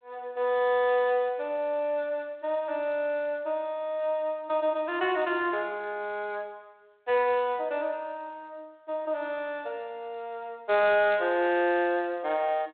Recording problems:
telephone audio; 280 Hz to 3.7 kHz, G.726

